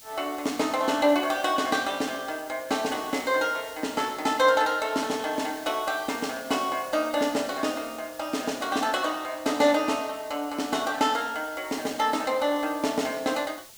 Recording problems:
hiss; SNR 19 dB

